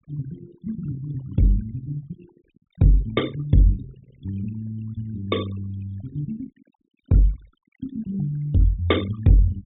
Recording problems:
treble missing; nothing above 4 kHz
noise reduction artefacts; signal-to-artefact ratio 19 dB

